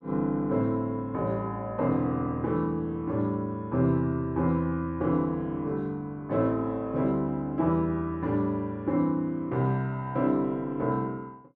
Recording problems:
none

